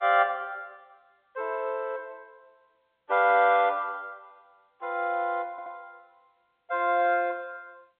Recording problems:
phone line; 370 Hz to 3.7 kHz, G.711
stutter; at 5.5 s

